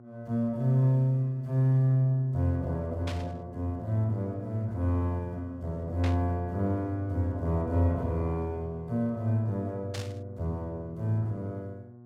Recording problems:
hum; 60 Hz, harmonics up to 1.1 kHz, SNR 19 dB
static burst; at 3 s, at 6 s and at 10 s; peak -5 dB vs average level

